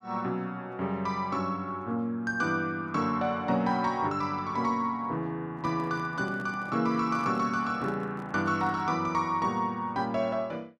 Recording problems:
microphone handling noise; from 5.5 to 9 s; peak -10 dB vs average level

